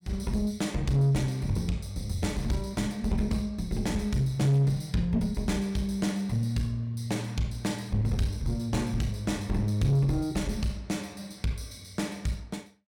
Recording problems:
distortion; soft clipping, signal-to-distortion ratio 11 dB

